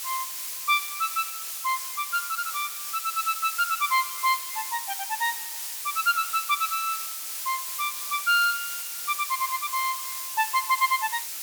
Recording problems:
hiss; slope +4 dB per octave, SNR 4 dB

